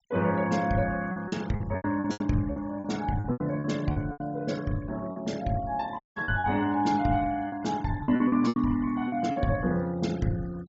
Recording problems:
treble cut off; nothing above 8 kHz
denoising artefacts; signal-to-artefact ratio 21 dB
lost packets; 11% of the sound replaced, filled with repeated pitch periods
dropout; at 6 s

